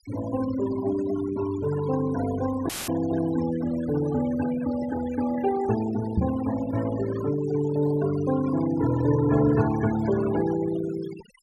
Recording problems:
noise reduction artefacts; signal-to-artefact ratio 12 dB
dropout; at 2.5 s; filled with static
knock on the microphone; at 6 s; peak +5 dB vs average level

